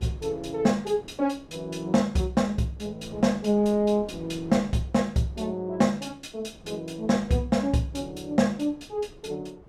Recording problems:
wind on the microphone; below 440 Hz, SNR 22 dB

